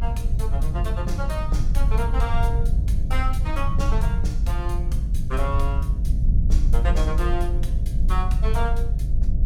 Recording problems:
hum; 60 Hz, harmonics up to 720 Hz, SNR 13 dB
rumble; below 64 Hz, strongest tone 22 Hz, SNR -7 dB

